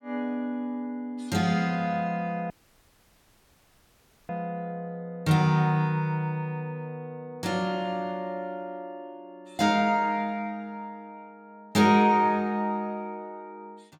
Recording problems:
audio cutting out; at 2.5 s for 2 s

